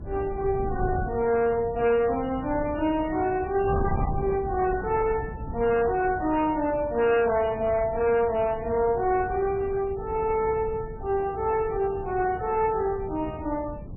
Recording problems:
lossy codec; MP3, log-spectral distance 2 dB, nothing above 2.4 kHz
distortion; hard clipping, uneven, signal-to-distortion ratio 10 dB
wind noise; below 190 Hz, SNR 11 dB

